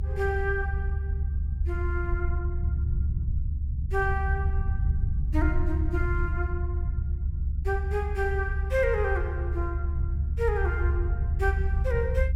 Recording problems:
low-frequency rumble; below 74 Hz, strongest tone 70 Hz, SNR -3 dB

